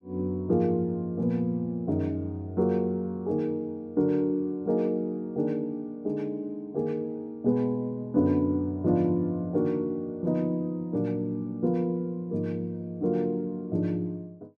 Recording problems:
none

